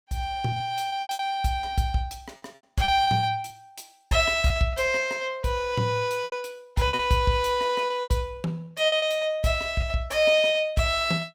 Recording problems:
lost packets; 9% of the sound replaced, filled with repeated pitch periods

